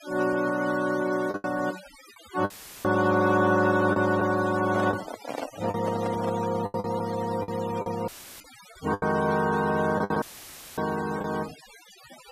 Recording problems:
noise reduction artefacts; signal-to-artefact ratio 16 dB
lost packets; 7% of the sound replaced, filled with the last packet
dropout; at 2.5 s, at 8 s and at 10 s for 0.5 s; filled with static
microphone handling noise; from 4.5 to 6.5 s; peak -3 dB vs average level

